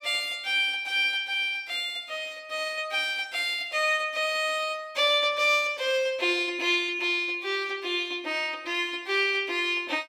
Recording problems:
none

